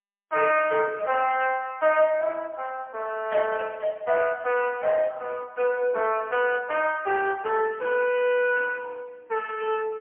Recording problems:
phone line; 340 Hz to 3.1 kHz, AMR-NB, then MP3

